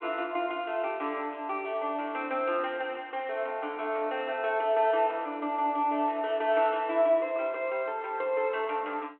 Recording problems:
telephone audio; 260 Hz to 3.3 kHz, G.726

